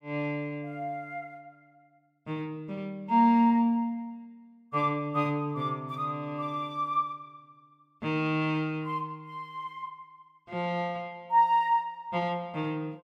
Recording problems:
none

